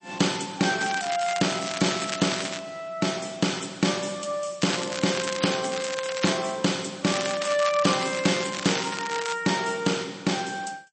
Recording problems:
codec artefacts; MP3, log-spectral distance 9 dB, nothing above 8.2 kHz
crackle; from 1 to 2.5 s, from 4.5 to 6.5 s and from 7 to 9.5 s; loose cable, SNR 7 dB

